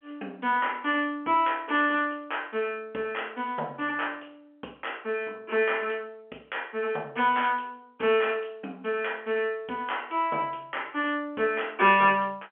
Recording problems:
telephone audio; 220 Hz to 3.4 kHz, G.711

